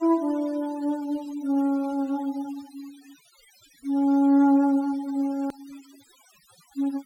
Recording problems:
denoising artefacts; signal-to-artefact ratio 26 dB
hard cut with a click; at 5.5 s

